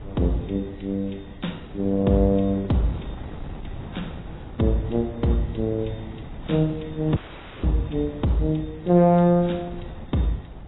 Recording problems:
lossy compression; AAC, then AAC, log-spectral distance 5 dB, nothing above 3.7 kHz
wind on the microphone; below 250 Hz, SNR 16 dB
dropout; at 7 s

